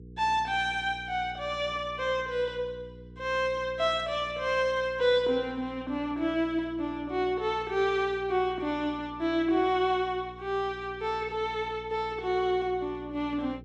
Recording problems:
electrical hum; 60 Hz, harmonics up to 480 Hz, SNR 19 dB

